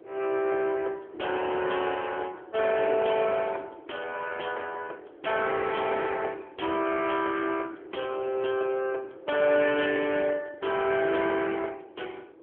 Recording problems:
telephone audio; 300 Hz to 3.2 kHz, AMR-NB
wind on the microphone; below 480 Hz, SNR 20 dB

